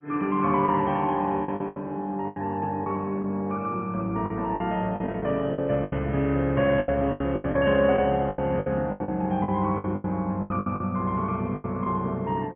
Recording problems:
low-pass filter; nothing above 2.8 kHz
lossy compression; MP2, log-spectral distance 2 dB
lost packets; 13% of the sound replaced, filled with the last packet

